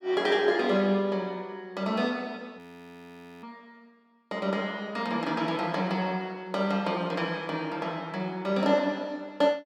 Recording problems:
frozen audio; at 2.5 s for 1 s

